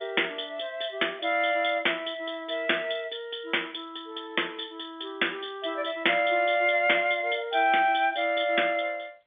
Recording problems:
phone line; 220 Hz to 3.6 kHz, G.711

